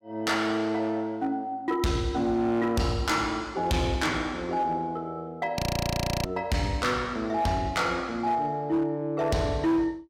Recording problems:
distortion; hard clipping, signal-to-distortion ratio 10 dB
audio freezing; at 5.5 s for 0.5 s

